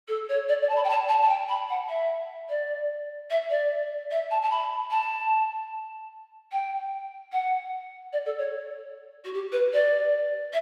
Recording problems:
none

